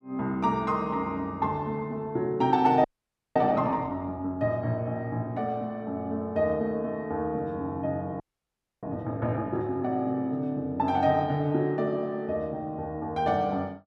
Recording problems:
frozen audio; at 3 s for 0.5 s and at 8 s for 0.5 s

